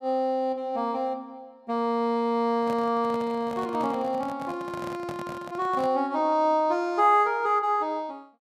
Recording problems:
microphone handling noise; from 2.5 to 6 s; peak -8 dB vs average level

